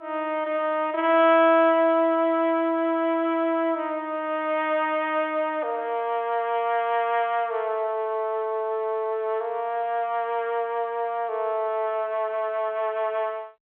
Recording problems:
phone line; 300 Hz to 3.4 kHz, G.711

